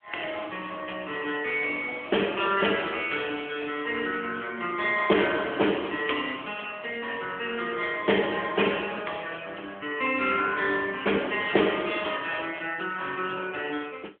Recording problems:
phone line; 280 Hz to 3.3 kHz, AMR-NB

